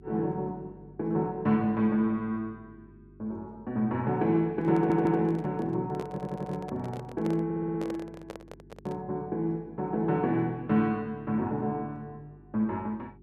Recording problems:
electrical hum; 50 Hz, harmonics up to 400 Hz, SNR 24 dB
handling noise; from 4.5 to 9 s; peak -5 dB vs average level
audio stuttering; at 5 s, at 6 s and at 7.5 s

